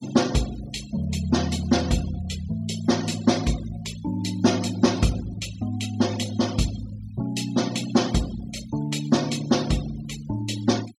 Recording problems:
noise reduction artefacts; signal-to-artefact ratio 16 dB

